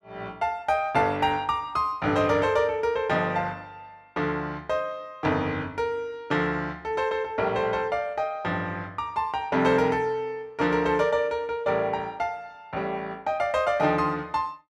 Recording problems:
none

